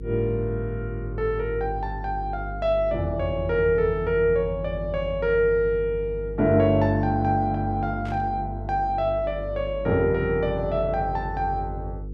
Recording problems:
electrical hum; 50 Hz, harmonics up to 500 Hz, SNR 11 dB
burst of static; at 8 s; peak -16 dB vs average level

